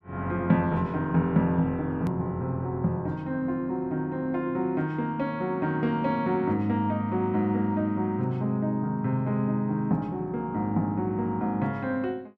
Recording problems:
edit click; at 2 s

